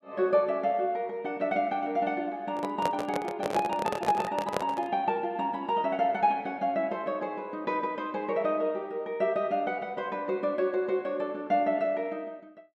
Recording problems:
microphone handling noise; from 2.5 to 5 s; peak +3 dB vs average level

